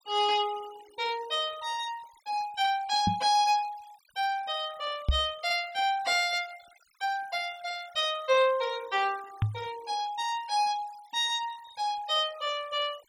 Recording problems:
denoising artefacts; signal-to-artefact ratio 21 dB
microphone bump; at 3 s, at 5 s and at 9.5 s; peak +6 dB vs average level

